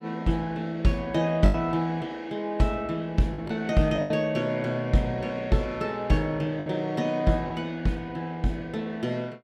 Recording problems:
packet loss; 3% of the sound replaced, filled with the last packet

